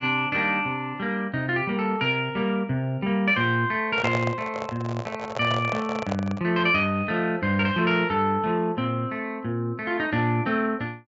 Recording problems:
treble missing; nothing above 8 kHz
microphone handling noise; from 4 to 6.5 s; peak 0 dB vs average level

